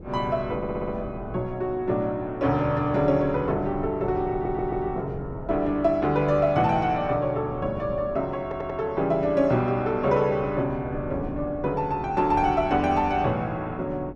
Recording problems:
wind on the microphone; below 260 Hz, SNR 16 dB
audio stuttering; at 0.5 s, at 4.5 s and at 8.5 s

